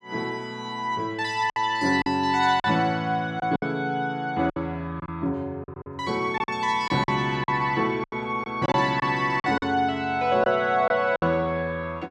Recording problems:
lost packets; 8% of the sound replaced, filled with silence

